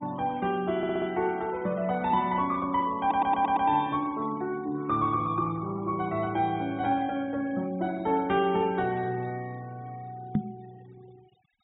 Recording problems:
treble cut off; nothing above 3.7 kHz
denoising artefacts; signal-to-artefact ratio 24 dB
audio stuttering; at 1 s and at 3 s
microphone thump; at 10 s; peak +6 dB vs average level

